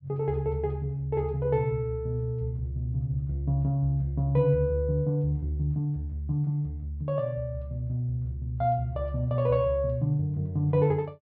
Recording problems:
low-pass filter; nothing above 5.5 kHz

